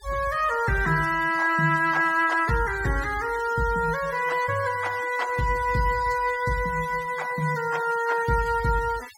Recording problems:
noise reduction artefacts; signal-to-artefact ratio 17 dB

